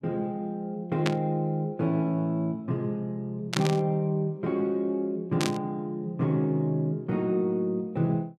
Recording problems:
static burst; at 1 s, at 3.5 s and at 5.5 s; peak +3 dB vs average level

